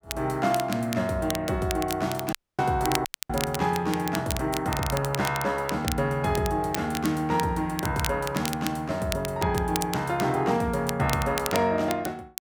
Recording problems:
crackle; vinyl, SNR 9 dB
dropout; at 2.5 s and at 3 s

